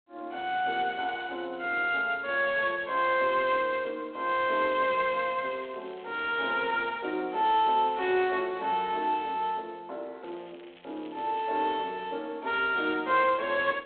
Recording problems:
phone line; 320 Hz to 3.6 kHz, G.726
crackle; from 4.5 to 6 s, at 7.5 s and from 10 to 11 s; loose cable, SNR 27 dB

